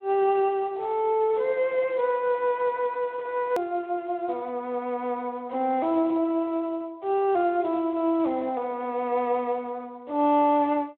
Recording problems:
phone line; 260 Hz to 3.9 kHz, Speex
hard cut with a click; at 3.5 s

